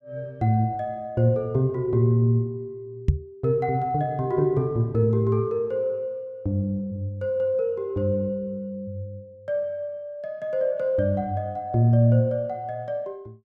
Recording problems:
microphone bump; at 3 s; peak +8 dB vs average level

